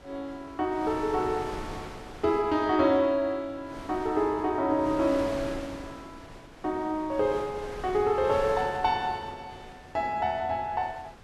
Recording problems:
wind noise; below 1.4 kHz, SNR 15 dB

